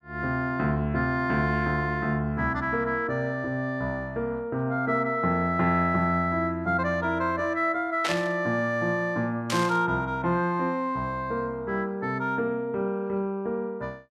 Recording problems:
static burst; at 8 s and at 9.5 s; peak +1 dB vs average level

